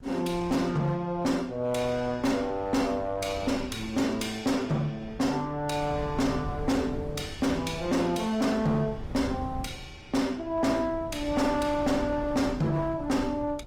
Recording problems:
lossy codec; Opus, log-spectral distance 3 dB, nothing above 19 kHz
distortion; hard clipping, uneven, signal-to-distortion ratio 10 dB
wind on the microphone; below 170 Hz, SNR 14 dB

